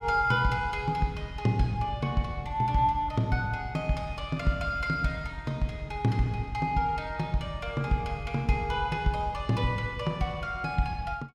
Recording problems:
none

